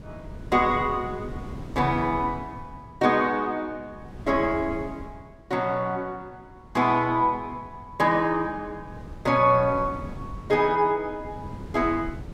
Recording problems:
wind on the microphone; below 240 Hz, SNR 16 dB

